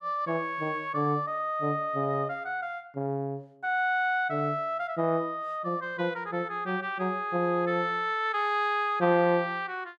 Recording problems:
none

